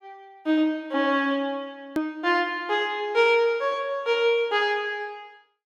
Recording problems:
edit click; at 2 s

